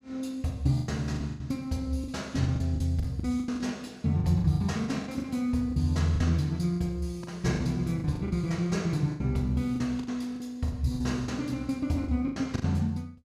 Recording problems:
lost packets; 13% of the sound replaced, filled with the last packet

